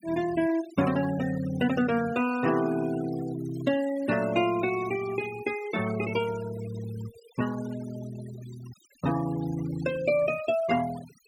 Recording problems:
noise reduction artefacts; signal-to-artefact ratio 16 dB

